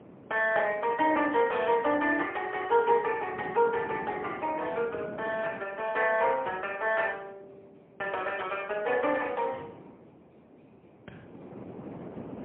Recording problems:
telephone audio; 220 Hz to 3.1 kHz, AMR-NB, then MP3
wind on the microphone; below 570 Hz, SNR 18 dB

